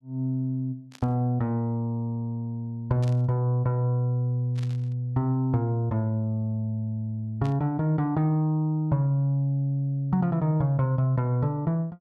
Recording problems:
burst of static; 4 times, first at 1 s; peak -14 dB vs average level

